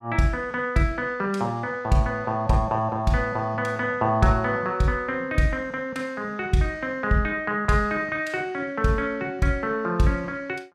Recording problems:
none

